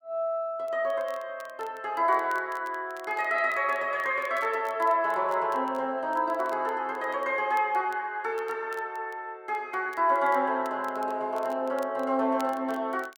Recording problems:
crackling; vinyl, SNR 27 dB

